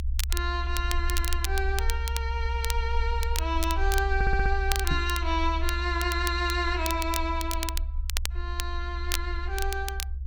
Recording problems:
low-frequency rumble; below 68 Hz, SNR 1 dB
crackle; vinyl, SNR 6 dB
audio stuttering; at 4 s
microphone thump; at 5 s; peak +2 dB vs average level

